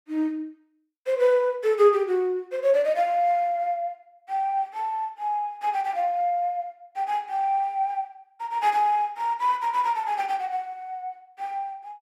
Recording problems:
none

